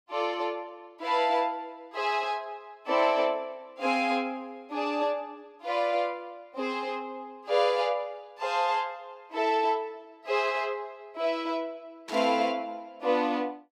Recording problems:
static burst; at 12 s; peak -8 dB vs average level

